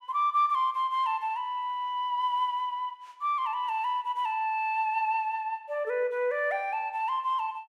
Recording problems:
none

